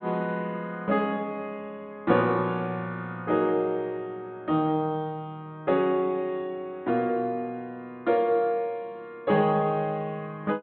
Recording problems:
low-pass filter; nothing above 4.2 kHz

